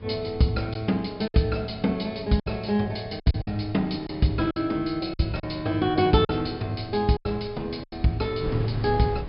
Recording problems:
low-pass filter; nothing above 5.5 kHz
wind on the microphone; below 250 Hz, SNR 16 dB
lost packets; 7% of the sound replaced, filled with silence

